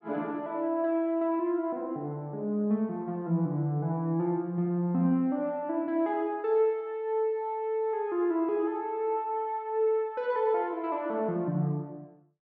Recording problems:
none

